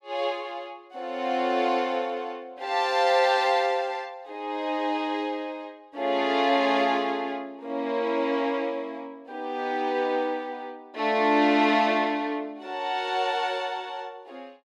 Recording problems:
none

